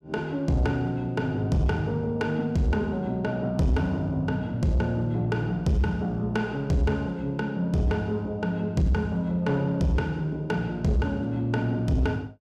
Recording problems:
distortion; soft clipping, signal-to-distortion ratio 11 dB

